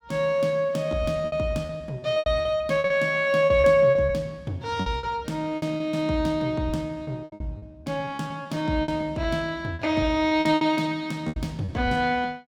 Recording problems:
lost packets; 14% of the sound replaced, filled with repeated pitch periods

